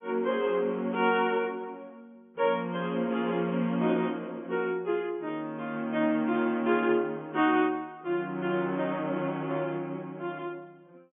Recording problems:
treble cut off; nothing above 3.5 kHz

